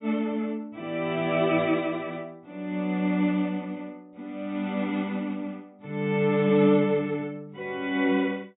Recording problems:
treble missing; nothing above 4 kHz

